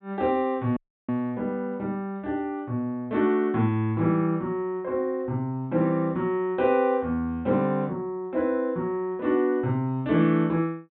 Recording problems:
low-pass filter; nothing above 4 kHz
dropout; at 1 s

